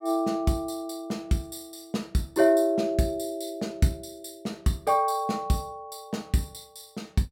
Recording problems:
none

